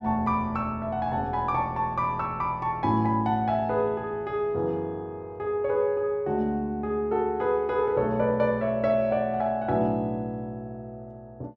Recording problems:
none

